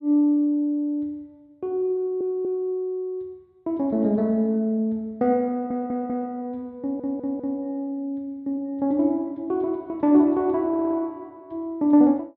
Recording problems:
stutter; 4 times, first at 2 s

